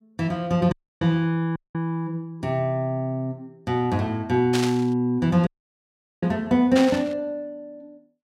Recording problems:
audio cutting out; at 0.5 s, at 1.5 s and at 5.5 s for 1 s
burst of static; at 4.5 s and at 7 s; peak 0 dB vs average level

